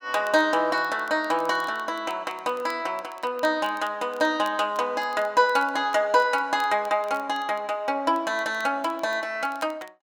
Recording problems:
crackling; vinyl, SNR 27 dB

